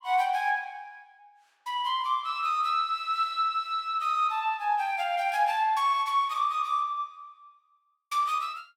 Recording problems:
none

